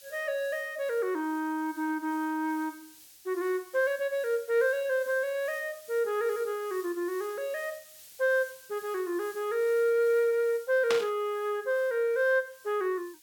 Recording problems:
hiss; SNR 21 dB
static burst; at 11 s; peak +2 dB vs average level

